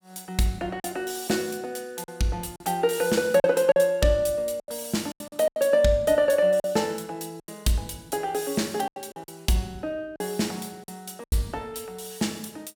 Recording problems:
lost packets; 7% of the sound replaced, filled with silence

